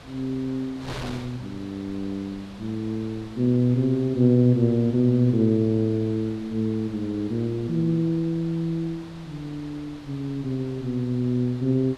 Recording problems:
wind noise; below 2.4 kHz, SNR 19 dB

